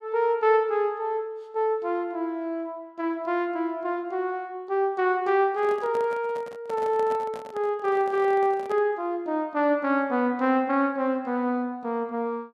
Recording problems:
handling noise; from 5.5 to 9 s; peak -10 dB vs average level

